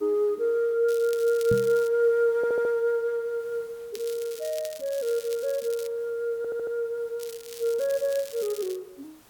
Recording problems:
hiss; slope -3 dB per octave, SNR 29 dB
crackle; at 1 s, from 4 to 6 s and from 7 to 9 s; loose cable, SNR 17 dB
microphone thump; at 1.5 s; peak 0 dB vs average level
stutter; at 2.5 s and at 6.5 s

